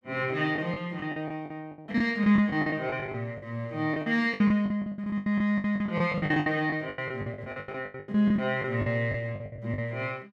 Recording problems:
lost packets; 20% of the sound replaced, filled with the last packet

